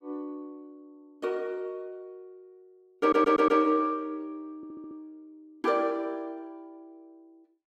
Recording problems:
audio stuttering; at 3 s and at 4.5 s

